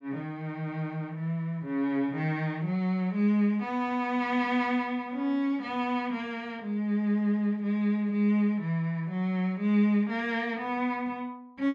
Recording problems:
none

